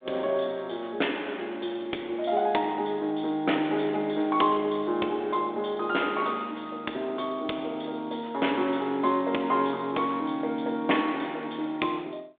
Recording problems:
phone line; 240 Hz to 3.6 kHz, G.726

